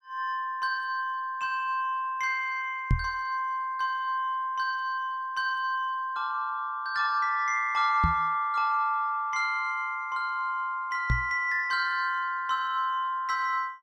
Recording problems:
knock on the microphone; at 3 s, at 8 s and at 11 s; peak +6 dB vs average level

